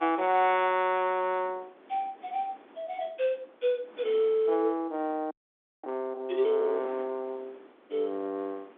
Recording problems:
telephone audio; 240 Hz to 3.6 kHz, G.711
wind on the microphone; below 1.2 kHz, SNR 24 dB
audio freezing; at 5.5 s for 0.5 s

